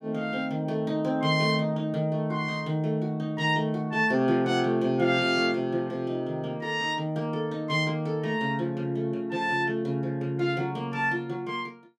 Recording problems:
none

